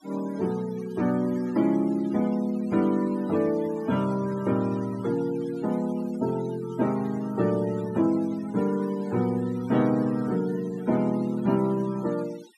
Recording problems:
denoising artefacts; signal-to-artefact ratio 20 dB

